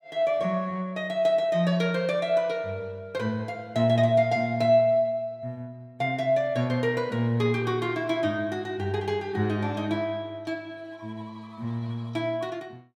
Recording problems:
none

